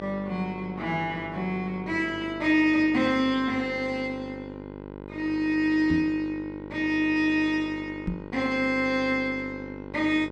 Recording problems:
hum; 50 Hz, harmonics up to 2 kHz, SNR 13 dB
microphone bump; at 6 s and at 8 s; peak 0 dB vs average level

